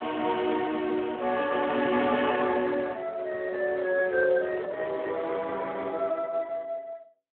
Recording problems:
telephone audio; 260 Hz to 3.5 kHz, Speex
handling noise; from 3.5 to 5.5 s; peak -7 dB vs average level

